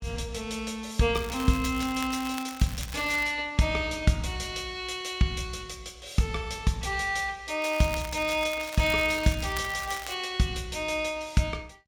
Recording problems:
crackle; from 1 to 3.5 s and from 7.5 to 10 s; loose cable, SNR 13 dB

